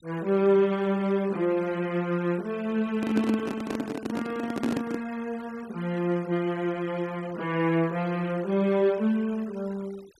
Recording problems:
denoising artefacts; signal-to-artefact ratio 22 dB
microphone handling noise; from 3 to 5 s; peak +3 dB vs average level

